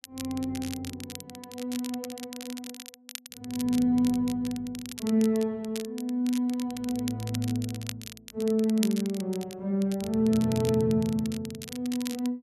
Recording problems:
crackling; vinyl, SNR 14 dB

